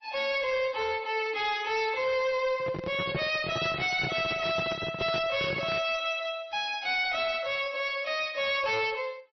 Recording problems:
lossy compression; MP3, log-spectral distance 4 dB, nothing above 5.8 kHz
distorted audio; hard clipping, uneven, signal-to-distortion ratio 10 dB
microphone handling noise; from 2.5 to 6 s; peak -1 dB vs average level

